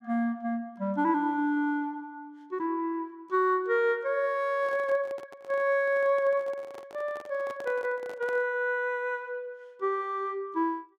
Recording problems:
microphone handling noise; from 4.5 to 8.5 s; peak -10 dB vs average level

